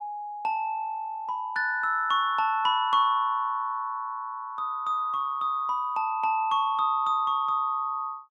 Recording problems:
none

